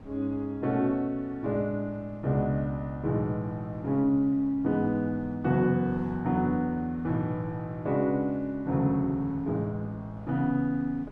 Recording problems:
wind noise; below 370 Hz, SNR 22 dB

